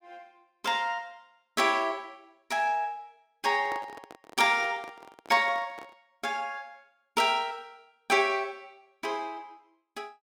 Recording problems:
handling noise; from 3.5 to 6 s; peak -8 dB vs average level

